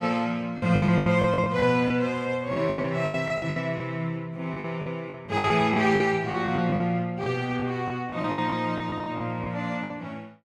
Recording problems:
lost packets; 14% of the sound replaced, filled with the last packet

